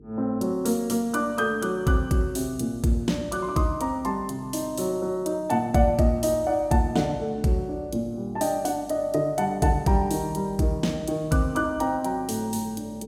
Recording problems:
hum; 50 Hz, harmonics up to 450 Hz, SNR 24 dB

